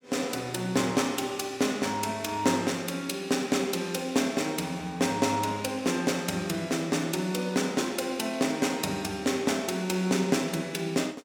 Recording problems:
none

